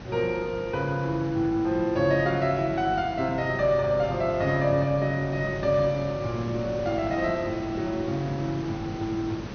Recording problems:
treble cut off; nothing above 6.4 kHz
hum; 50 Hz, harmonics up to 450 Hz, SNR 17 dB
hiss; slope -5 dB per octave, SNR 13 dB

